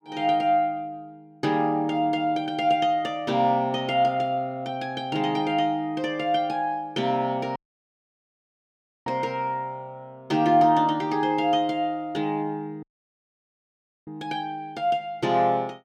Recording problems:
audio cutting out; at 7.5 s for 1.5 s and at 13 s for 1 s

